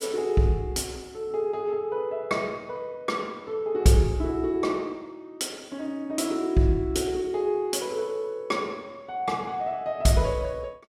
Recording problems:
none

